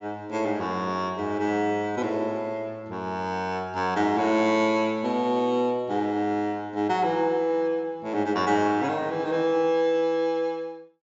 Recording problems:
treble missing; nothing above 8 kHz

